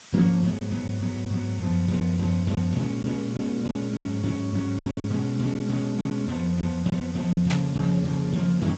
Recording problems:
lossy compression; Speex, log-spectral distance 6 dB
hiss; slope +1 dB per octave, SNR 20 dB
packet loss; 7% of the sound replaced, filled with silence
static burst; at 7.5 s; peak 0 dB vs average level

